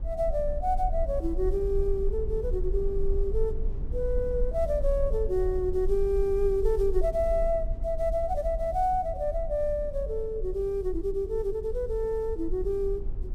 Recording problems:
rumble; below 48 Hz, strongest tone 22 Hz, SNR 6 dB

